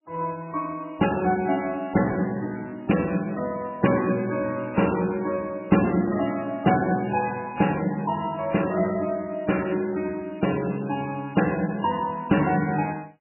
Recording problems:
codec artefacts; MP3, log-spectral distance 6 dB, nothing above 2.7 kHz

